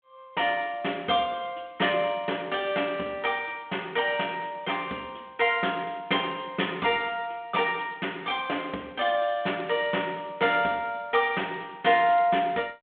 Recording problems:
phone line; 220 Hz to 3.5 kHz, G.726

